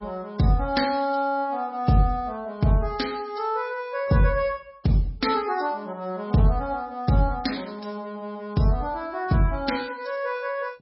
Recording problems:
lossy compression; MP3, log-spectral distance 3 dB, nothing above 5.3 kHz

